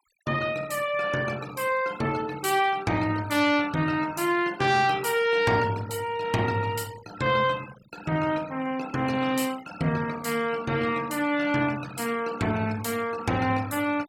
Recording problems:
noise reduction artefacts; signal-to-artefact ratio 18 dB

